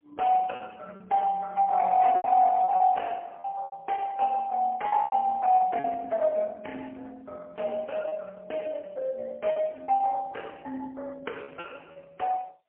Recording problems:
telephone audio; 320 Hz to 2.6 kHz, AMR-NB, then MP3
lost packets; 7% of the sound replaced, filled with repeated pitch periods

